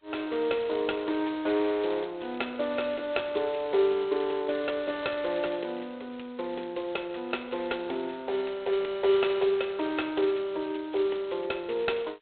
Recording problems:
phone line; 320 Hz to 4 kHz, G.726

